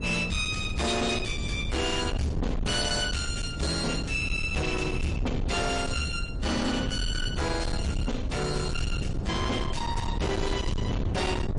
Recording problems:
lossy codec; MP3, log-spectral distance 3 dB, nothing above 10.4 kHz
distortion; hard clipping, uneven, signal-to-distortion ratio 7 dB
low-frequency rumble; below 230 Hz, SNR 4 dB

